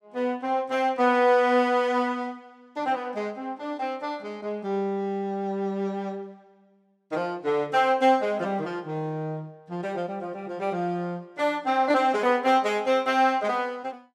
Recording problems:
none

